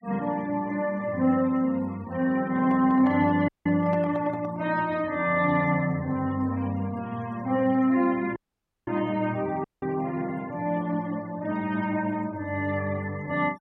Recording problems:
denoising artefacts; signal-to-artefact ratio 25 dB
microphone handling noise; from 2.5 to 4.5 s; peak -8 dB vs average level
dropout; at 3.5 s, at 8.5 s for 0.5 s and at 9.5 s

